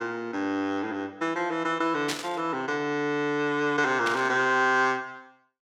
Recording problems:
burst of static; at 2 s and at 4 s; peak 0 dB vs average level

